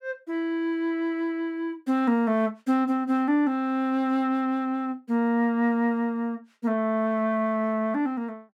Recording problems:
none

